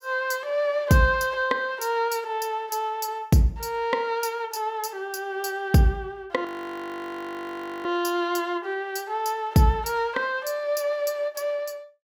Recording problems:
audio freezing; at 6.5 s for 1.5 s

